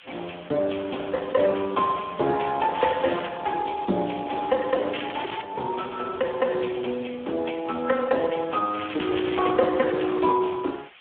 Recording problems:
phone line; 260 Hz to 3.3 kHz, Speex
background hiss; SNR 21 dB
crackle; at 2.5 s, at 5 s and at 9 s; loose cable, SNR 12 dB

